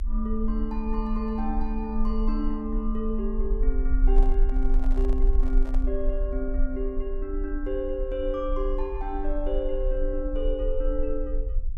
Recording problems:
low-frequency rumble; below 38 Hz, strongest tone 28 Hz, SNR -1 dB
microphone handling noise; from 4 to 6 s; peak -8 dB vs average level

